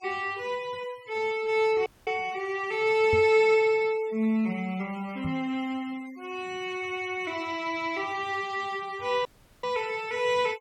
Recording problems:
denoising artefacts; signal-to-artefact ratio 23 dB
dropout; at 2 s and at 9.5 s
microphone bump; at 3 s and at 5.5 s; peak -1 dB vs average level

